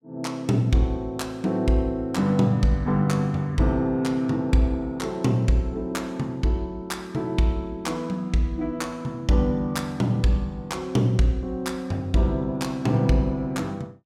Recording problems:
none

